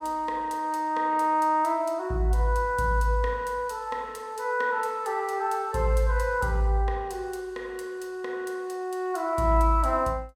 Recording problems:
none

